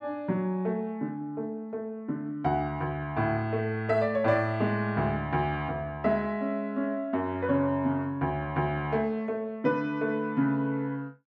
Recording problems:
none

